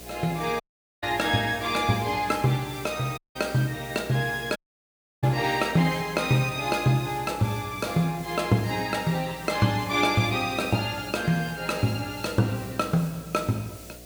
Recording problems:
hum; 60 Hz, harmonics up to 720 Hz, SNR 22 dB
background hiss; slope +1 dB per octave, SNR 18 dB
dropout; at 0.5 s, at 3 s and at 4.5 s for 0.5 s

